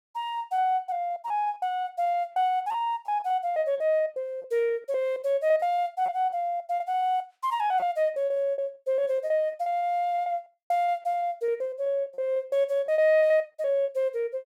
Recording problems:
packet loss; 15% of the sound replaced, filled with repeated pitch periods

